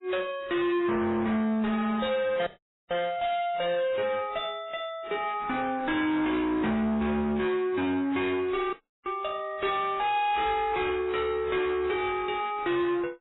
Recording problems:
lossy compression; MP3, then AAC, log-spectral distance 3 dB, nothing above 3.8 kHz
distorted audio; hard clipping, uneven, signal-to-distortion ratio 6 dB
dropout; at 2.5 s and at 8.5 s

